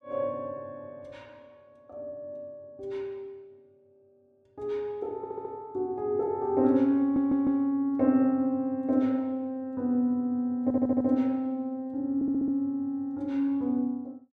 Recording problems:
stutter; 4 times, first at 5 s

